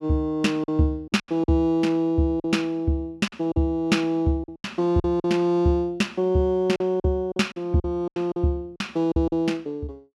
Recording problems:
packet loss; 10% of the sound replaced, filled with silence

